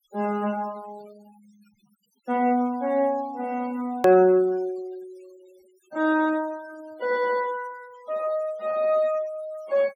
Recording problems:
noise reduction artefacts; signal-to-artefact ratio 25 dB
click at an edit; at 4 s

